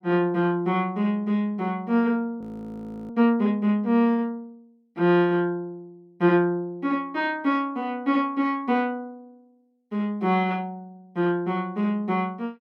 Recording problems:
frozen audio; at 2.5 s for 0.5 s

